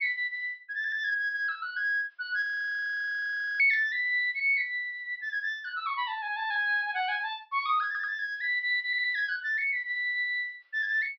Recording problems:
low-pass filter; nothing above 5.5 kHz
audio stuttering; at 1 s, at 8 s and at 9 s
audio freezing; at 2.5 s for 1 s

